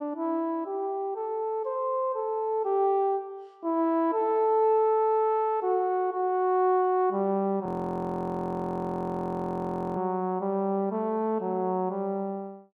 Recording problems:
frozen audio; at 7.5 s for 2.5 s

